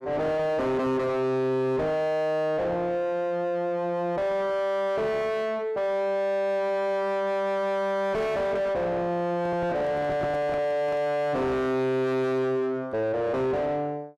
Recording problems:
distortion; soft clipping, signal-to-distortion ratio 5 dB
handling noise; from 9.5 to 11 s; peak +4 dB vs average level

